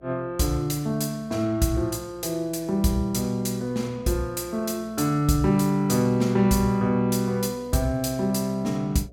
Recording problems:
mains hum; 60 Hz, harmonics up to 720 Hz, SNR 27 dB

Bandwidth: 17 kHz